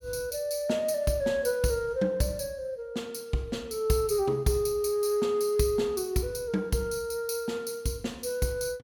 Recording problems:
none

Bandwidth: 18 kHz